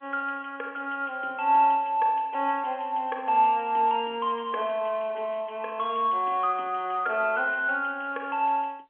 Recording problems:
telephone audio; 260 Hz to 3.3 kHz, G.711

